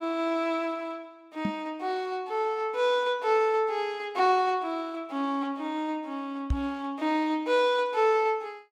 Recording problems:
microphone thump; at 1.5 s and at 6.5 s; peak +4 dB vs average level

